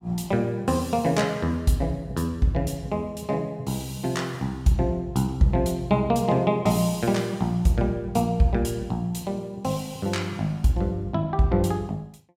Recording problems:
none

